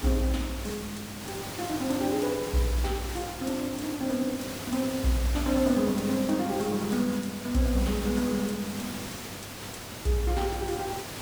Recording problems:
electrical hum; 50 Hz, harmonics up to 800 Hz, SNR 20 dB
background hiss; slope -3 dB per octave, SNR 8 dB

